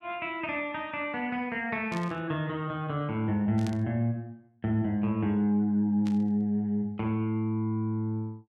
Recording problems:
static burst; at 2 s, at 3.5 s and at 6 s; peak -9 dB vs average level

